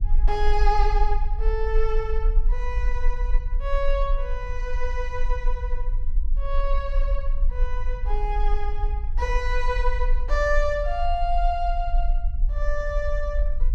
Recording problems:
rumble; below 38 Hz, strongest tone 18 Hz, SNR -2 dB

